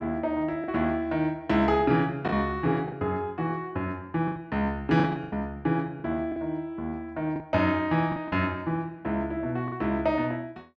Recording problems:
lost packets; 6% of the sound replaced, filled with the last packet

